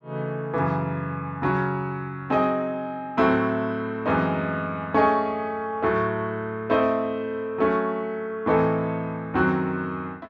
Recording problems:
none

